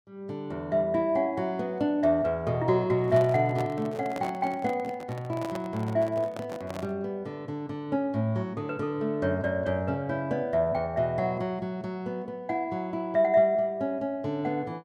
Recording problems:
microphone handling noise; from 3 to 7 s; peak -5 dB vs average level

